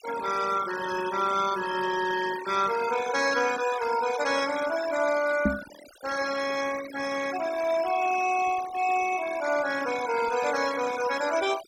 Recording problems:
denoising artefacts; signal-to-artefact ratio 11 dB
knock on the microphone; at 5.5 s; peak +5 dB vs average level

